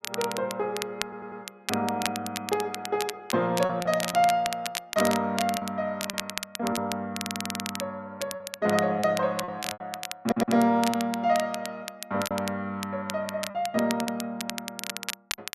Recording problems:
crackle; vinyl, SNR 8 dB
lost packets; 5% of the sound replaced, filled with repeated pitch periods
audio stuttering; at 1 s, at 7 s and at 10 s

